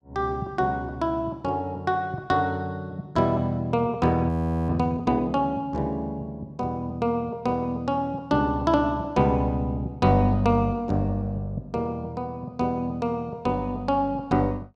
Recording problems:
audio freezing; at 4.5 s

